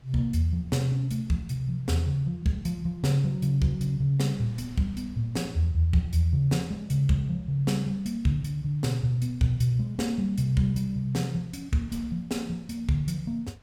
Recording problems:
wind on the microphone; below 200 Hz, SNR 28 dB

